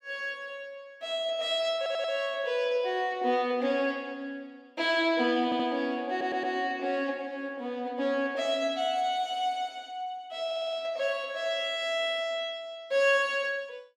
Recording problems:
stutter; 4 times, first at 2 s

